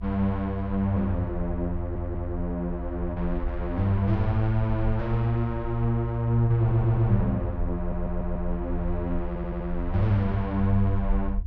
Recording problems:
rumble; below 64 Hz, strongest tone 24 Hz, SNR 8 dB
audio stuttering; 4 times, first at 2 s

